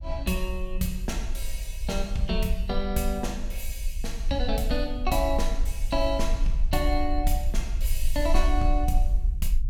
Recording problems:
low-frequency rumble; below 46 Hz, SNR 1 dB

